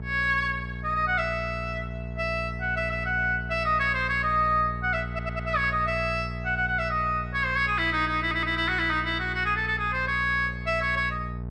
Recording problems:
electrical hum; 60 Hz, harmonics up to 840 Hz, SNR 10 dB
stutter; at 5 s and at 8 s

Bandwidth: 12.5 kHz